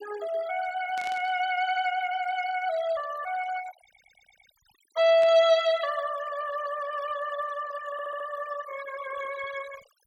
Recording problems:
denoising artefacts; signal-to-artefact ratio 15 dB
static burst; at 1 s and at 5 s; peak -11 dB vs average level
audio stuttering; at 1.5 s, at 4 s and at 8 s

